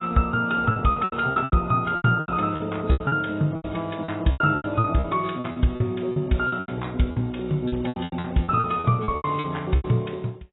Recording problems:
lossy compression; AAC, log-spectral distance 3 dB, nothing above 3.8 kHz
lost packets; 18% of the sound replaced, filled with repeated pitch periods

